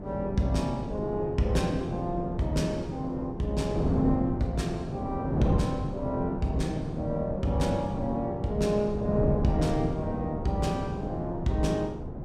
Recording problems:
wind on the microphone; below 320 Hz, SNR 3 dB

